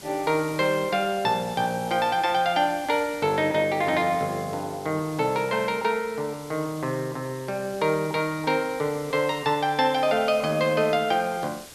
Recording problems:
background hiss; SNR 19 dB

